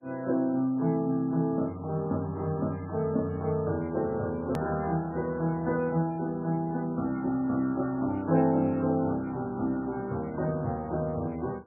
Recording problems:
lossy compression; AAC, then MP3, log-spectral distance 2 dB, nothing above 13.1 kHz
hard cut with a click; at 4.5 s

